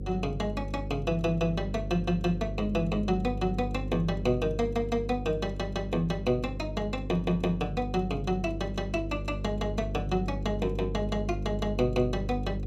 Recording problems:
hum; 50 Hz, harmonics up to 550 Hz, SNR 6 dB

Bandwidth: 14 kHz